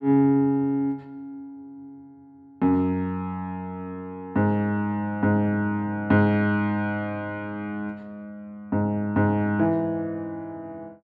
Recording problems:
none

